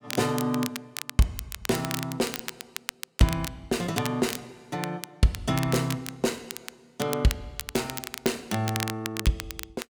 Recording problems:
crackling; vinyl, SNR 8 dB

